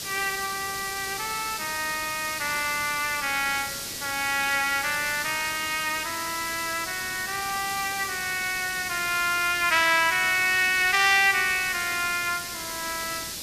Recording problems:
hiss; SNR 7 dB

